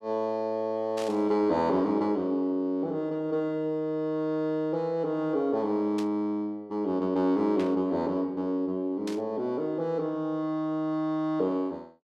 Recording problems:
burst of static; 4 times, first at 1 s; peak -8 dB vs average level

